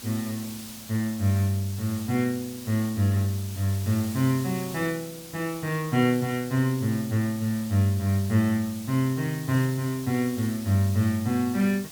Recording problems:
background hiss; slope 0 dB per octave, SNR 15 dB

